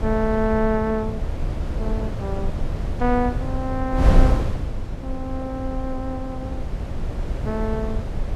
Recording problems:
wind noise; below 110 Hz, SNR 1 dB

